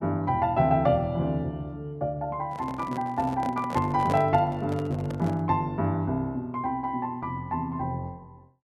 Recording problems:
handling noise; from 2.5 to 5.5 s; peak -2 dB vs average level

